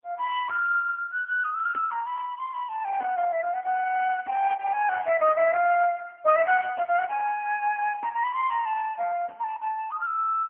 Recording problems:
phone line; 260 Hz to 2.9 kHz, AMR-NB

